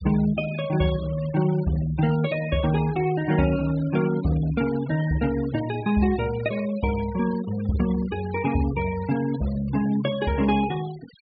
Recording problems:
low-pass filter; nothing above 4.8 kHz
denoising artefacts; signal-to-artefact ratio 18 dB

